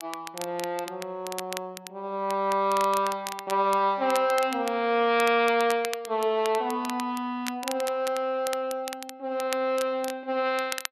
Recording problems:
crackling; vinyl, SNR 13 dB

